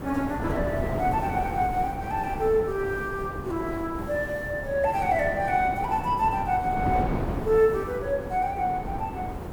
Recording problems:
background hiss; slope -1 dB per octave, SNR 27 dB
wind noise; below 540 Hz, SNR 7 dB

